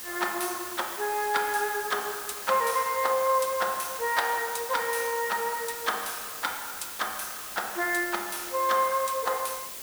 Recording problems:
background hiss; slope 0 dB per octave, SNR 7 dB

